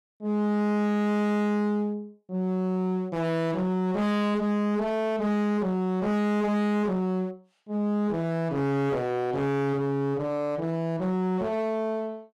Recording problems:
distortion; hard clipping, uneven, signal-to-distortion ratio 7 dB

